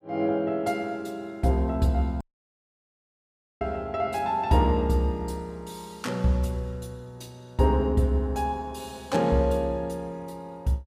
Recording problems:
dropout; at 2 s for 1.5 s

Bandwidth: 15.5 kHz